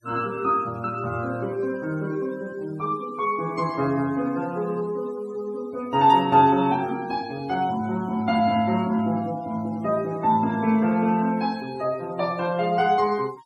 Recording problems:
denoising artefacts; signal-to-artefact ratio 24 dB

